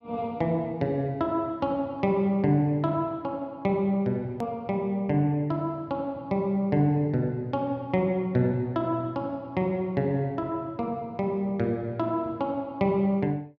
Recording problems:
edit click; at 4.5 s

